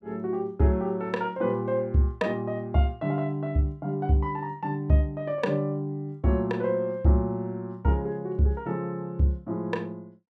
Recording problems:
none

